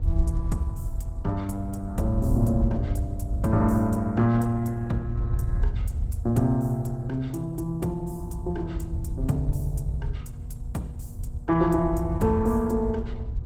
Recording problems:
lossy codec; Opus, log-spectral distance 2 dB
electrical hum; 60 Hz, harmonics up to 720 Hz, SNR 19 dB
rumble; below 82 Hz, SNR 4 dB

